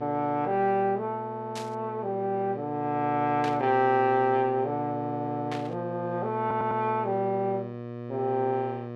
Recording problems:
hum; 60 Hz, harmonics up to 1.9 kHz, SNR 10 dB
burst of static; at 1.5 s, at 3.5 s and at 5.5 s; peak -5 dB vs average level
audio stuttering; at 6.5 s

